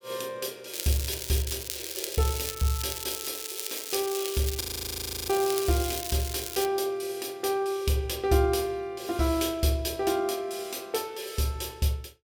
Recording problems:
crackle; from 0.5 to 6.5 s; loose cable, SNR 5 dB
audio freezing; at 4.5 s for 0.5 s

